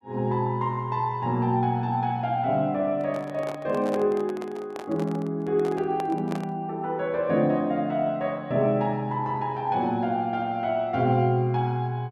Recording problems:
handling noise; from 3 to 6.5 s; peak -5 dB vs average level

